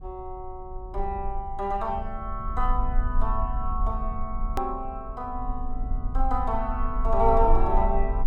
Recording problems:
rumble; below 44 Hz, strongest tone 18 Hz, SNR 2 dB
hard cut with a click; at 4.5 s

